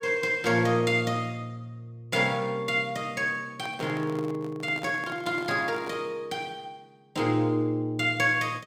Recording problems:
microphone handling noise; from 3.5 to 6 s; peak -9 dB vs average level

